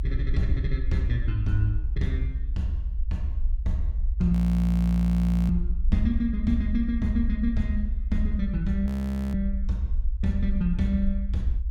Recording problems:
rumble; below 62 Hz, SNR 2 dB
frozen audio; at 4.5 s for 1 s and at 9 s

